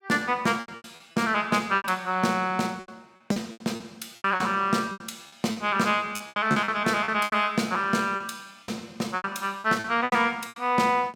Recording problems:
lost packets; 14% of the sound replaced, filled with repeated pitch periods

